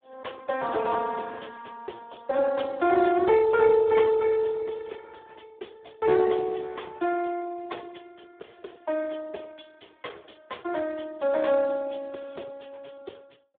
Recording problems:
telephone audio; 300 Hz to 3.7 kHz, Speex

